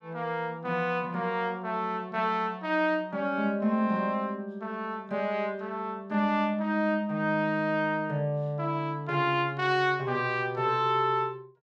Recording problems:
none

